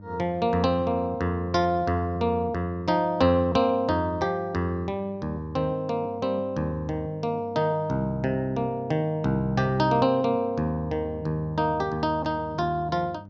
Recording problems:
hum; 50 Hz, harmonics up to 600 Hz, SNR 20 dB

